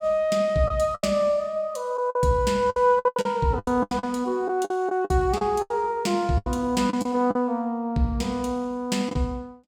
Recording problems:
packet loss; 11% of the sound replaced, filled with the last packet

